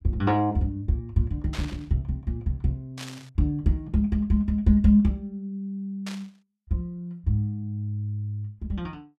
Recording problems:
burst of static; at 1.5 s, at 3 s and at 6 s; peak -7 dB vs average level

